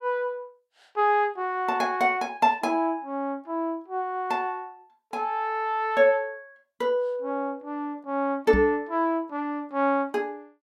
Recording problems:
microphone thump; at 8.5 s; peak +2 dB vs average level

